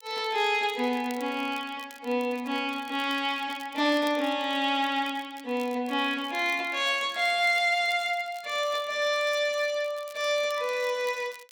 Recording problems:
crackling; vinyl, SNR 23 dB

